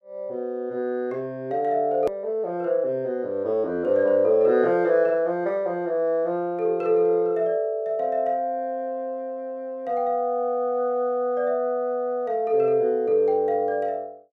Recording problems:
edit click; at 2 s

